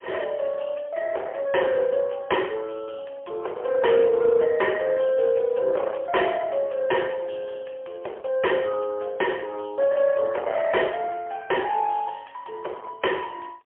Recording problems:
phone line; 340 Hz to 3.3 kHz, AMR-NB, then MP3
distorted audio; hard clipping, uneven, signal-to-distortion ratio 10 dB

